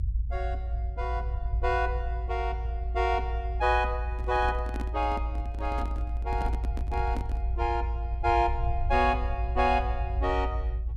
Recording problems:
rumble; below 60 Hz, strongest tone 56 Hz, SNR 2 dB
handling noise; from 4 to 7.5 s; peak -3 dB vs average level

